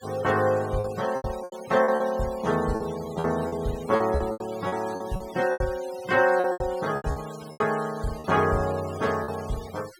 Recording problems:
noise reduction artefacts; signal-to-artefact ratio 17 dB
packet loss; 12% of the sound replaced, filled with repeated pitch periods

